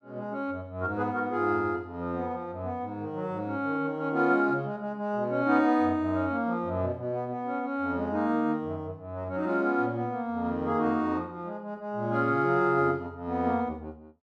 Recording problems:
none

